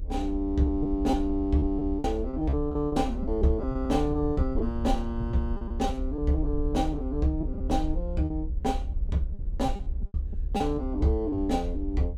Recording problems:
electrical hum; 60 Hz, harmonics up to 540 Hz, SNR 22 dB
low-frequency rumble; below 68 Hz, strongest tone 34 Hz, SNR 5 dB
packet loss; 9% of the sound replaced, filled with repeated pitch periods

